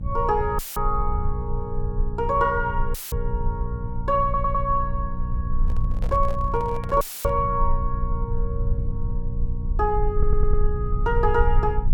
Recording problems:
hum; 60 Hz, harmonics up to 540 Hz, SNR 9 dB
low-frequency rumble; below 56 Hz, strongest tone 20 Hz, SNR 3 dB
audio cutting out; at 0.5 s, at 3 s and at 7 s; filled with static
stutter; at 4 s and at 10 s
handling noise; from 5.5 to 7.5 s; peak -9 dB vs average level

